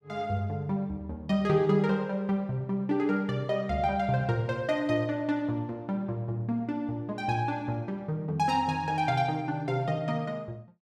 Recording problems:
none

